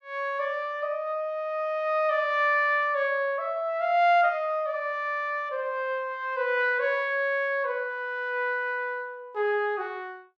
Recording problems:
none

